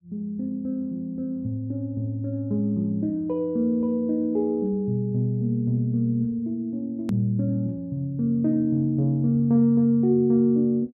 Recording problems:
hard cut with a click; at 7 s

